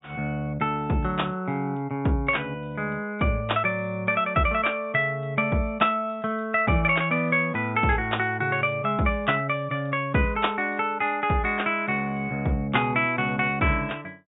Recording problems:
treble cut off; nothing above 4 kHz

